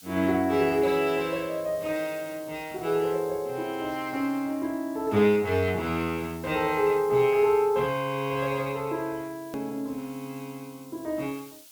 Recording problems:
background hiss; SNR 22 dB
click at an edit; at 9.5 s

